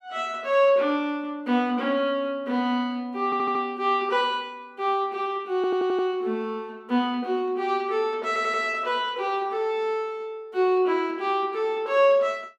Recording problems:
audio stuttering; at 3.5 s, at 5.5 s and at 8.5 s

